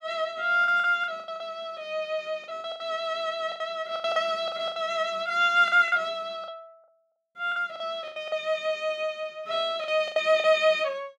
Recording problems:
packet loss; 12% of the sound replaced, filled with the last packet

